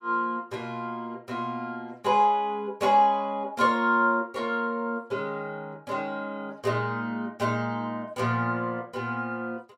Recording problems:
none

